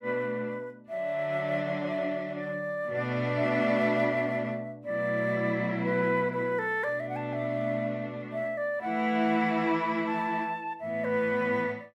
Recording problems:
none

